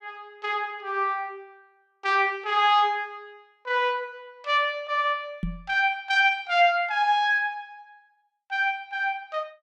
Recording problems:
knock on the microphone; at 5.5 s; peak -2 dB vs average level

